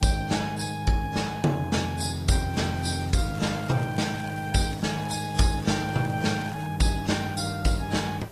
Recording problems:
codec artefacts; AAC, then AAC, log-spectral distance 5 dB
background hiss; slope +4 dB per octave, SNR 28 dB
wind noise; below 1.2 kHz, SNR 23 dB
crackle; from 3 to 6.5 s; loose cable, SNR 22 dB

